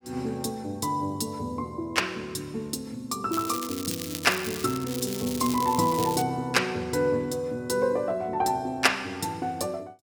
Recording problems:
crackle; from 3.5 to 6 s; loose cable, SNR 8 dB

